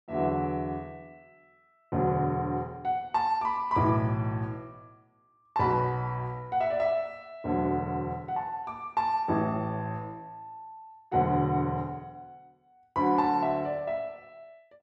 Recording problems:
none

